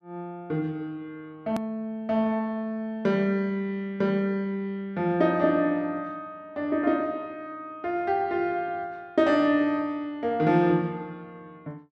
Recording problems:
click at an edit; at 1.5 s

